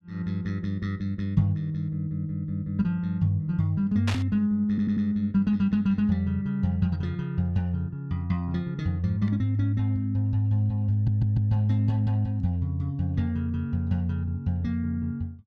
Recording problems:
static burst; at 4 s; peak -1 dB vs average level
audio stuttering; at 4.5 s and at 11 s

